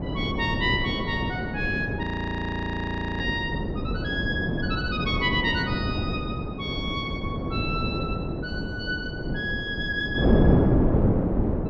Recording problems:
treble missing; nothing above 7.5 kHz
wind noise; below 370 Hz, SNR -2 dB
frozen audio; at 2 s for 1 s

